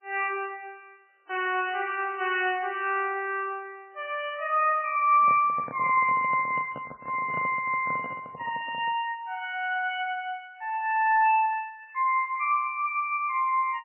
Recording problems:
lossy codec; MP3, log-spectral distance 3 dB
handling noise; from 5 to 9 s; peak -7 dB vs average level

